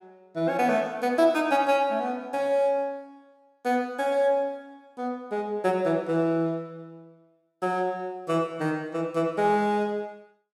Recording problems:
none

